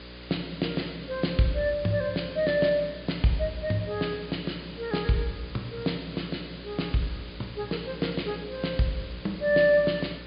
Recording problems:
treble cut off; nothing above 4.9 kHz
hum; 60 Hz, harmonics up to 600 Hz, SNR 17 dB
hiss; SNR 17 dB

